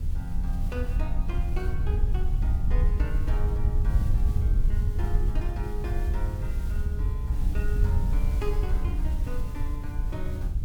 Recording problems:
background hiss; slope -4 dB per octave, SNR 12 dB
wind on the microphone; below 72 Hz, SNR -10 dB

